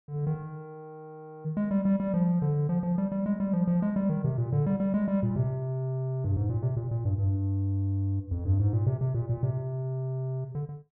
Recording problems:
none

